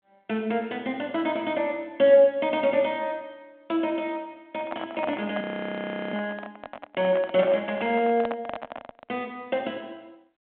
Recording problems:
telephone audio; 280 Hz to 3.3 kHz, G.726
microphone handling noise; from 4.5 to 9 s; peak -4 dB vs average level
frozen audio; at 5.5 s for 0.5 s

